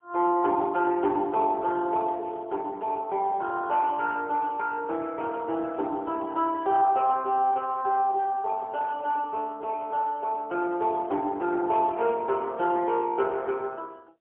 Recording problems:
phone line; 300 Hz to 2.4 kHz, AMR-NB, then MP3

